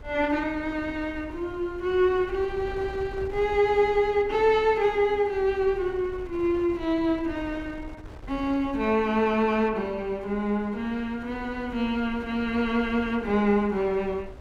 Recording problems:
wind on the microphone; below 140 Hz, SNR 19 dB

